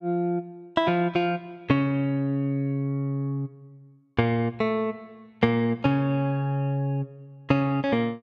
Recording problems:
none

